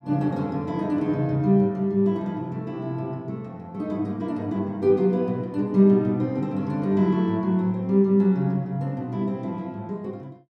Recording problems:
none

